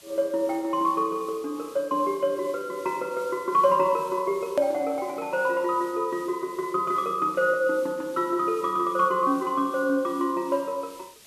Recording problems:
hiss; SNR 23 dB
hard cut with a click; at 4.5 s

